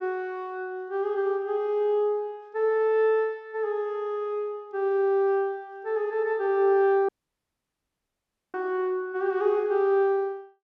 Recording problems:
dropout; at 7 s for 1.5 s

